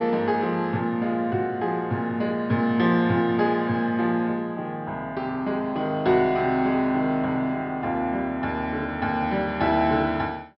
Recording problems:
low-pass filter; nothing above 5.5 kHz

